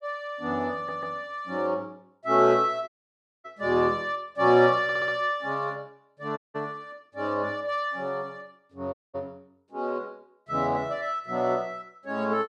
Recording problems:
stutter; at 1 s and at 5 s
audio cutting out; at 3 s for 0.5 s, at 6.5 s and at 9 s

